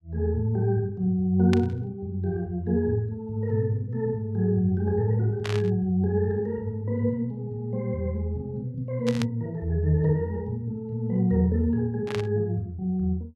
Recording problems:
burst of static; 4 times, first at 1.5 s; peak -2 dB vs average level

